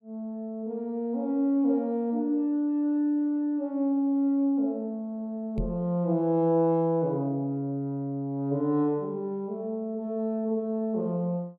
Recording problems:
knock on the microphone; at 5.5 s; peak 0 dB vs average level

